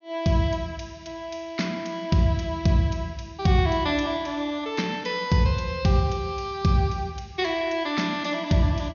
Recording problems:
treble cut off; nothing above 6.7 kHz

